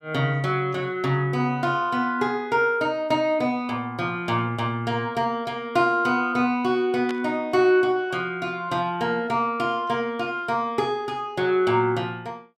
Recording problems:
burst of static; at 7 s; peak -8 dB vs average level

